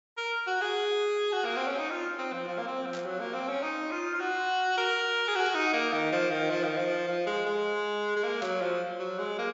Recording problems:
treble missing; nothing above 8 kHz
burst of static; at 3 s, at 5.5 s and at 8.5 s; peak -8 dB vs average level

